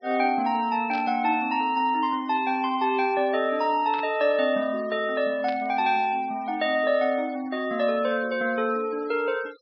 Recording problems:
treble cut off; nothing above 5.5 kHz
noise reduction artefacts; signal-to-artefact ratio 24 dB
static burst; at 1 s, at 4 s and at 5.5 s; peak -10 dB vs average level

